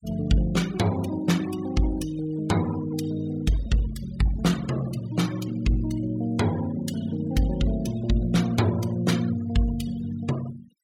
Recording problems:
denoising artefacts; signal-to-artefact ratio 17 dB

